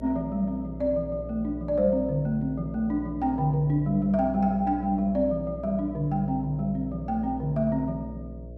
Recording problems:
hum; 60 Hz, harmonics up to 660 Hz, SNR 13 dB

